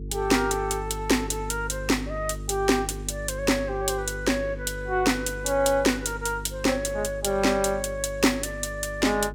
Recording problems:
hum; 50 Hz, harmonics up to 450 Hz, SNR 12 dB

